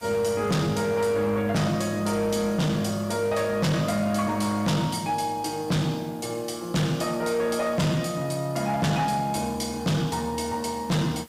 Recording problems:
distortion; hard clipping, signal-to-distortion ratio 8 dB
hiss; slope 0 dB per octave, SNR 26 dB

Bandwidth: 15.5 kHz